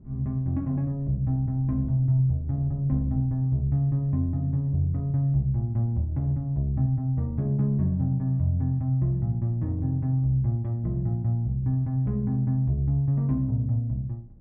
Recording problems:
wind on the microphone; below 170 Hz, SNR 23 dB

